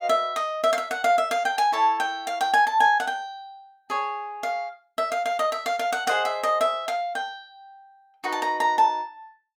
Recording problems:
none

